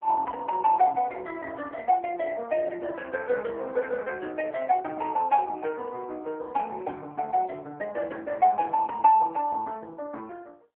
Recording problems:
telephone audio; 320 Hz to 2.6 kHz, AMR-NB

